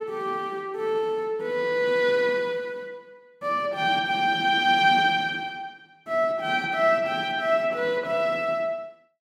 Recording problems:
none

